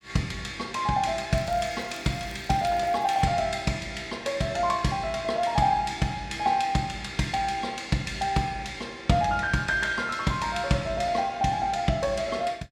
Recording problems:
crackling; from 1.5 to 3 s; loose cable, SNR 25 dB

